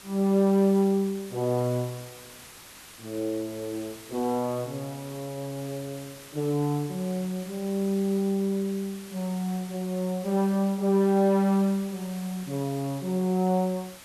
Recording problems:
background hiss; slope -1 dB per octave, SNR 18 dB

